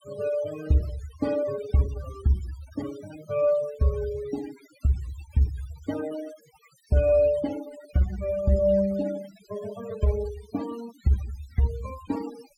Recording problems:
noise reduction artefacts; signal-to-artefact ratio 16 dB

